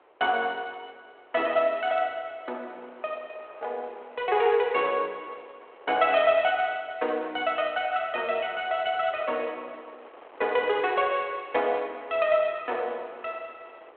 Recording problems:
telephone audio; 340 Hz to 3.4 kHz, G.726
wind noise; below 1.2 kHz, SNR 24 dB

